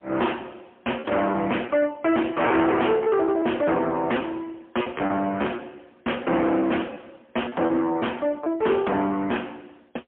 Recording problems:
phone line; 260 Hz to 3.2 kHz, AMR-NB, then MP3
distorted audio; hard clipping, uneven, signal-to-distortion ratio 7 dB
packet loss; 9% of the sound replaced, filled with repeated pitch periods

